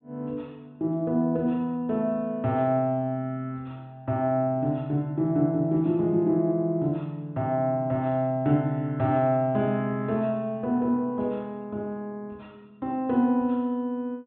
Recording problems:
treble cut off; nothing above 4 kHz

